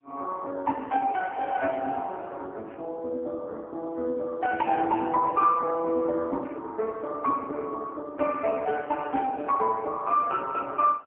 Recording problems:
telephone audio; 260 Hz to 2.2 kHz, AMR-NB, then MP3

